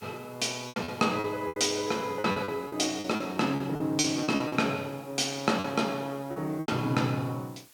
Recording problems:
background hiss; slope +1 dB per octave, SNR 25 dB
packet loss; 12% of the sound replaced, filled with repeated pitch periods

